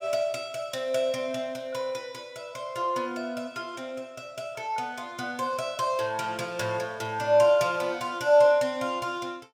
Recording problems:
none

